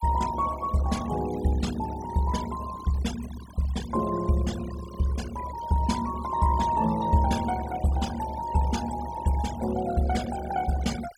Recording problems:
noise reduction artefacts; signal-to-artefact ratio 15 dB

